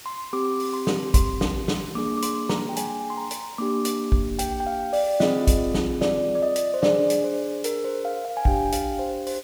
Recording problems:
hiss; SNR 19 dB

